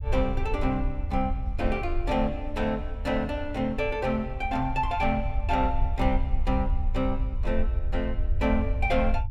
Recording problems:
rumble; below 64 Hz, SNR 3 dB

